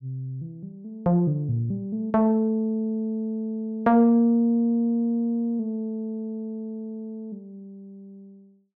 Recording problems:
none

